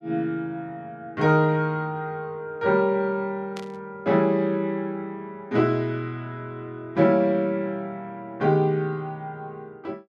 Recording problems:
static burst; at 3.5 s; peak -10 dB vs average level

